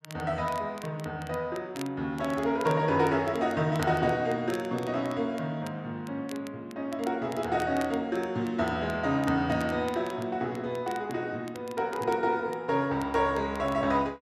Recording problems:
crackling; vinyl, SNR 21 dB

